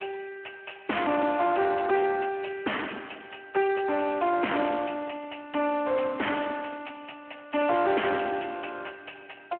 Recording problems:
telephone audio; 260 Hz to 3.1 kHz, Speex
distortion; soft clipping, signal-to-distortion ratio 5 dB

